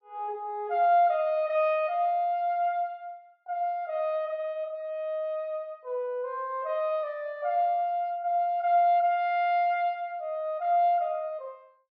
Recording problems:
none

